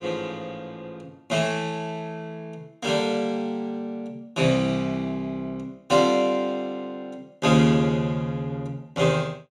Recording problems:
none

